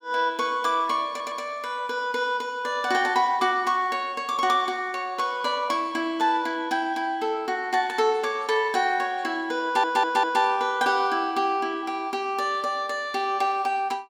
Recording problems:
audio stuttering; at 1 s and at 9.5 s

